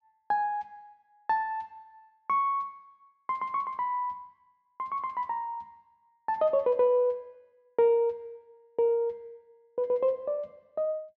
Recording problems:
none

